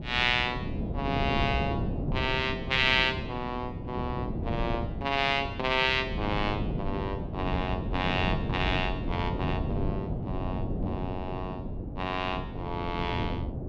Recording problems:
wind on the microphone; below 270 Hz, SNR 4 dB

